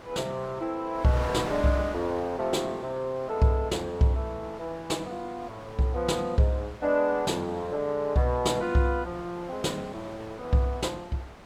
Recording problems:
wind on the microphone; below 1.6 kHz, SNR 15 dB

